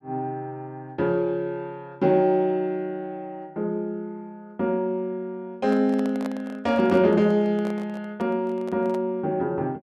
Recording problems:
microphone handling noise; from 5.5 to 9 s; peak -6 dB vs average level

